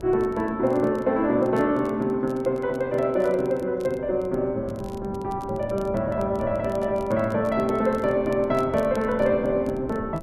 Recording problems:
wind noise; below 310 Hz, SNR 17 dB
crackle; vinyl, SNR 29 dB

